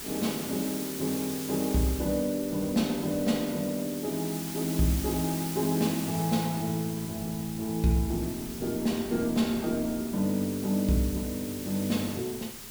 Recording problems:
hiss; slope +1 dB per octave, SNR 9 dB
wind noise; below 350 Hz, SNR 21 dB

